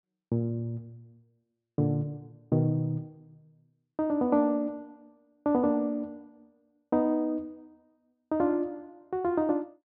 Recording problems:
low-pass filter; nothing above 5.5 kHz

